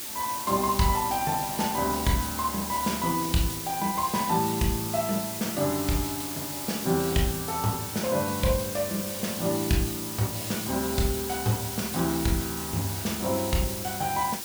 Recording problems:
hiss; SNR 5 dB

